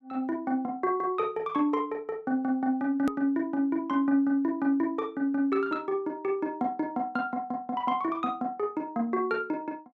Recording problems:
click at an edit; at 3 s

